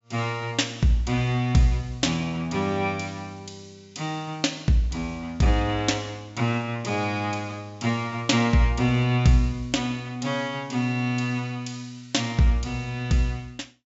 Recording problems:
treble cut off; nothing above 8 kHz

